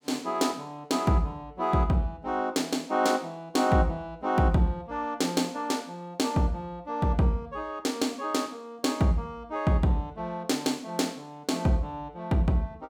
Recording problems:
none

